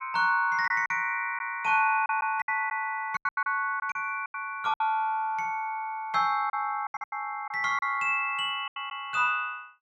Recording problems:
lost packets; 10% of the sound replaced, filled with silence

